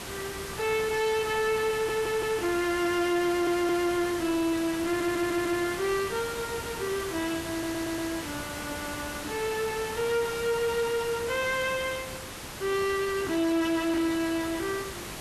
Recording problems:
distorted audio; hard clipping, uneven, signal-to-distortion ratio 10 dB
background hiss; slope -3 dB per octave, SNR 9 dB
stutter; 4 times, first at 1.5 s

